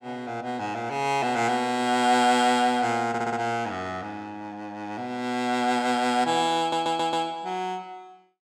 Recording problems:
stutter; at 3 s and at 6.5 s

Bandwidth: 17.5 kHz